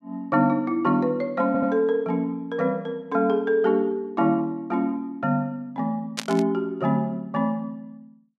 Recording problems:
audio stuttering; at 1.5 s
static burst; at 6 s; peak +1 dB vs average level

